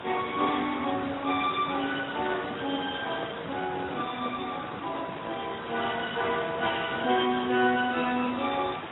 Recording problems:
codec artefacts; Speex, then AAC, log-spectral distance 13 dB, nothing above 3.6 kHz
hiss; SNR 9 dB
handling noise; from 3 to 5.5 s; peak -5 dB vs average level

